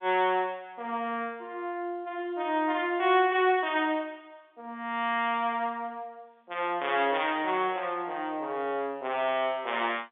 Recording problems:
phone line; 190 Hz to 3.6 kHz, G.711

